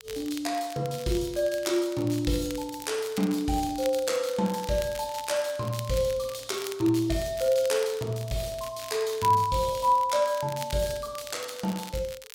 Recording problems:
crackling; vinyl, SNR 16 dB

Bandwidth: 16.5 kHz